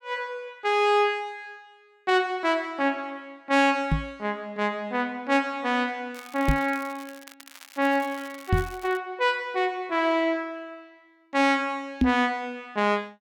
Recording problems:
microphone bump; 4 times, first at 4 s; peak +8 dB vs average level
crackle; from 6 to 9 s; loose cable, SNR 20 dB

